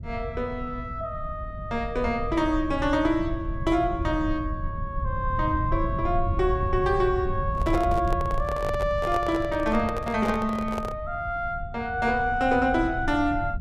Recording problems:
low-frequency rumble; below 100 Hz, SNR 7 dB
microphone handling noise; from 7.5 to 11 s; peak -3 dB vs average level

